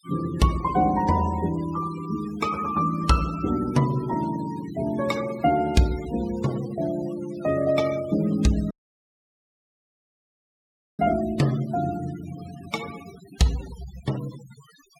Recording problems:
denoising artefacts; signal-to-artefact ratio 18 dB
audio cutting out; at 8.5 s for 2.5 s

